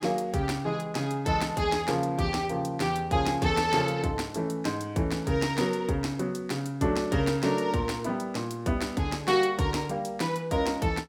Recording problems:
none

